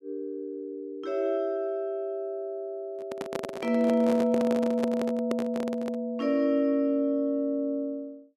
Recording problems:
handling noise; from 3 to 6 s; peak 0 dB vs average level

